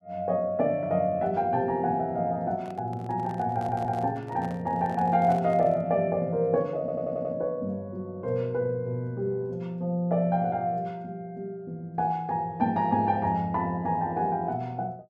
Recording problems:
microphone handling noise; from 2.5 to 6 s; peak -10 dB vs average level
audio stuttering; at 3.5 s and at 7 s

